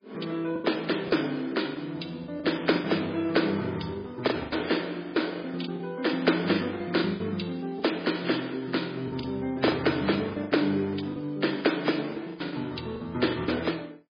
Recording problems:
lossy compression; MP3, log-spectral distance 6 dB, nothing above 5 kHz
packet loss; 11% of the sound replaced, filled with the last packet

